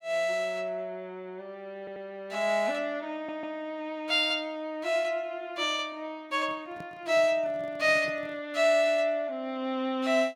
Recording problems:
stutter; at 2 s and at 3 s
microphone handling noise; from 6.5 to 8.5 s; peak -12 dB vs average level

